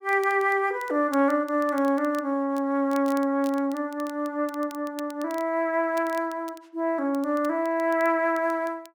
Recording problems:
crackle; vinyl, SNR 24 dB

